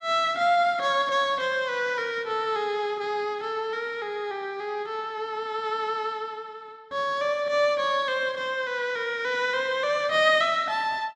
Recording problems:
none

